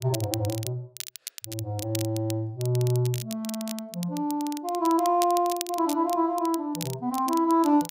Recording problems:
crackle; vinyl, SNR 12 dB

